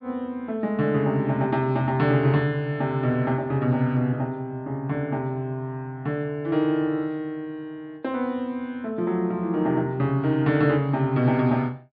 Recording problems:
low-pass filter; nothing above 5 kHz

